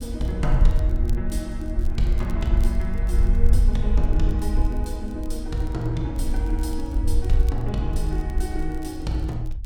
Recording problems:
low-frequency rumble; below 58 Hz, SNR -3 dB
crackle; vinyl, SNR 25 dB

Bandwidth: 17 kHz